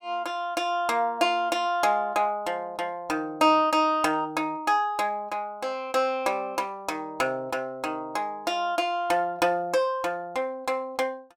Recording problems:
none

